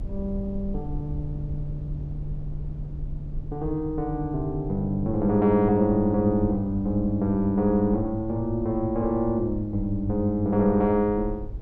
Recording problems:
low-frequency rumble; below 78 Hz, SNR 13 dB

